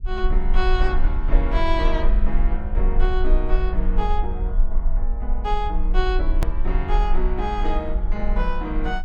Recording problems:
low-frequency rumble; below 40 Hz, strongest tone 20 Hz, SNR -3 dB
click at an edit; at 6.5 s

